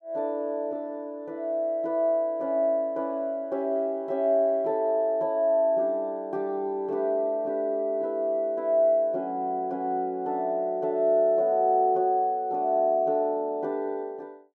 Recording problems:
none

